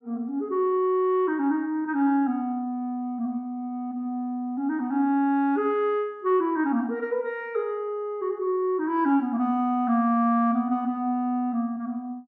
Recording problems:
none

